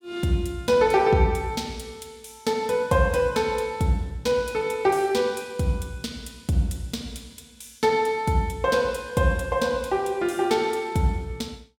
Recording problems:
none

